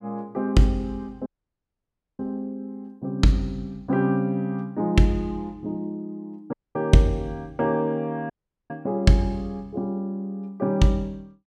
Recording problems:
dropout; at 1.5 s for 1 s, at 6.5 s and at 8.5 s

